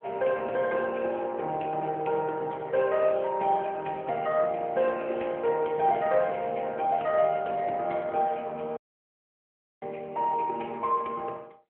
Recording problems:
telephone audio; 260 Hz to 3.2 kHz, AMR-NB
audio cutting out; at 9 s for 1 s

